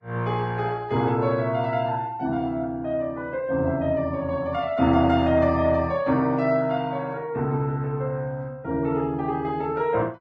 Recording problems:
lossy compression; Vorbis, log-spectral distance 2 dB

